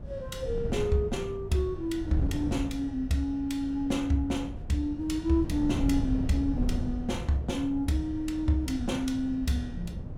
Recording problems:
wind on the microphone; below 150 Hz, SNR 7 dB

